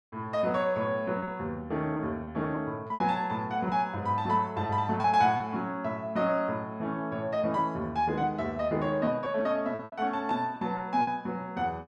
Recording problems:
packet loss; 5% of the sound replaced, filled with repeated pitch periods

